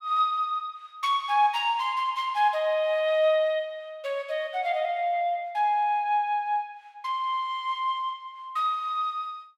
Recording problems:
none

